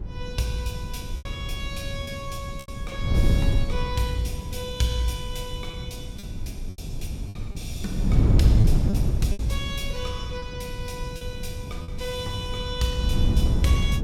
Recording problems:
wind on the microphone; below 120 Hz, SNR -3 dB
lost packets; 5% of the sound replaced, filled with repeated pitch periods

